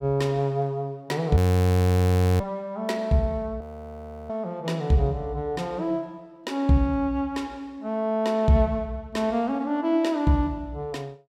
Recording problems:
audio freezing; at 1.5 s for 1 s and at 3.5 s for 0.5 s

